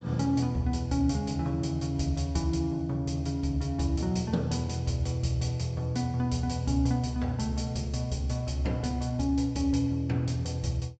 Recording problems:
treble cut off; nothing above 8 kHz

